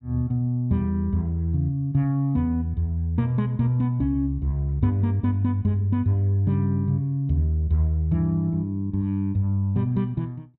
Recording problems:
none

